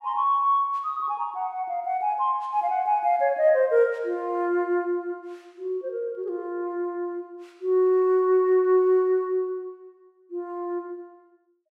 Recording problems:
none

